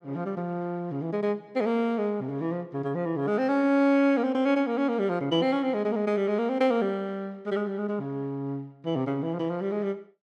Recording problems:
none

